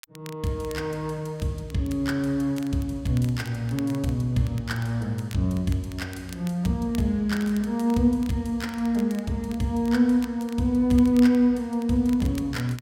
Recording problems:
crackle; vinyl, SNR 23 dB

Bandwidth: 16 kHz